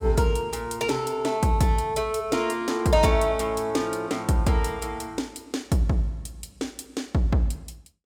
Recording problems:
none

